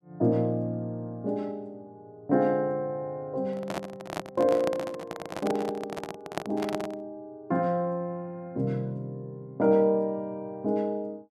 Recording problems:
microphone handling noise; from 3.5 to 7 s; peak +2 dB vs average level

